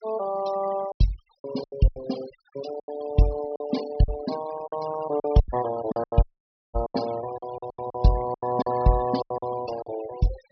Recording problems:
low-pass filter; nothing above 5.5 kHz
noise reduction artefacts; signal-to-artefact ratio 14 dB
lost packets; 13% of the sound replaced, filled with silence
audio cutting out; at 6 s for 0.5 s

